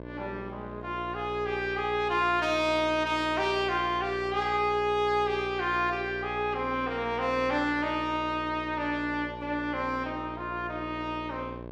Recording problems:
hum; 60 Hz, harmonics up to 1.2 kHz, SNR 13 dB

